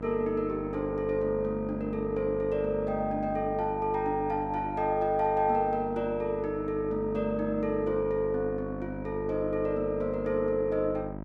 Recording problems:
electrical hum; 50 Hz, harmonics up to 1.4 kHz, SNR 9 dB

